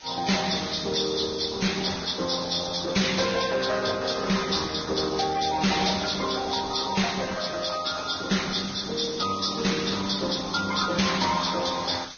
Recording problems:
lossy codec; Opus, then Vorbis, log-spectral distance 14 dB, nothing above 6 kHz
distorted audio; soft clipping, signal-to-distortion ratio 8 dB
hiss; slope +1 dB per octave, SNR 18 dB

